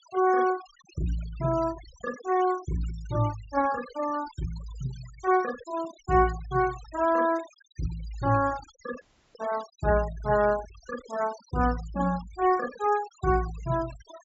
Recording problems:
treble missing; nothing above 7.6 kHz
noise reduction artefacts; signal-to-artefact ratio 18 dB
dropout; at 9 s

